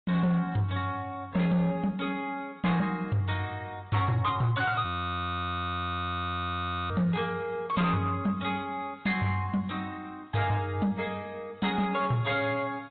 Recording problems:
treble missing; nothing above 3.8 kHz
lossy compression; AAC, log-spectral distance 2 dB
distortion; soft clipping, signal-to-distortion ratio 12 dB
frozen audio; at 5 s for 2 s

